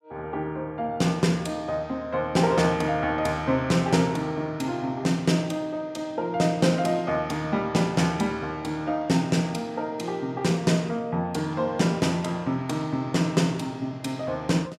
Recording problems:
none

